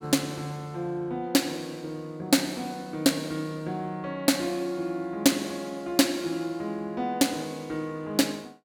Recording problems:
none

